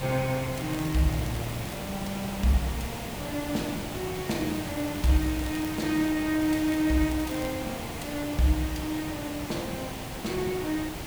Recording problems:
background hiss; slope -4 dB per octave, SNR 6 dB
crackle; from 0.5 to 2 s, from 4.5 to 6 s and from 6.5 to 7.5 s; loose cable, SNR 18 dB

